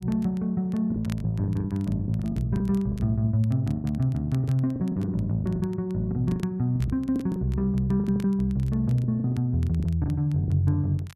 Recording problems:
crackling; vinyl, SNR 28 dB
lost packets; 13% of the sound replaced, filled with the last packet

